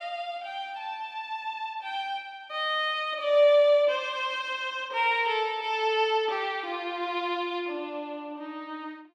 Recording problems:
none

